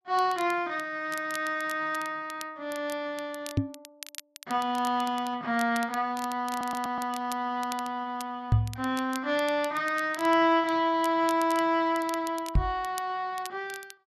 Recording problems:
crackling; vinyl, SNR 17 dB
knock on the microphone; at 3.5 s, at 8.5 s and at 13 s; peak +9 dB vs average level
stutter; at 6.5 s

